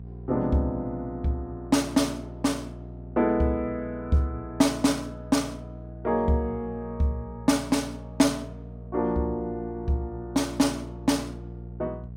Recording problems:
mains hum; 60 Hz, harmonics up to 480 Hz, SNR 14 dB

